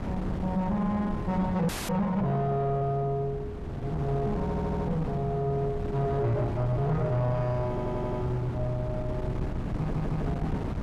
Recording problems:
distorted audio; soft clipping, signal-to-distortion ratio 11 dB
wind on the microphone; below 300 Hz, SNR 5 dB
audio freezing; at 1.5 s
audio stuttering; at 4.5 s, at 7.5 s and at 10 s

